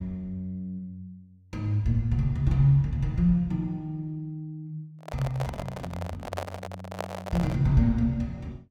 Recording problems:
handling noise; from 5 to 7.5 s; peak -1 dB vs average level

